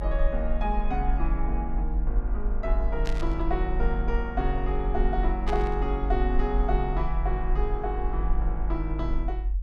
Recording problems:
rumble; below 48 Hz, SNR -1 dB
static burst; at 3 s and at 5.5 s; peak -2 dB vs average level

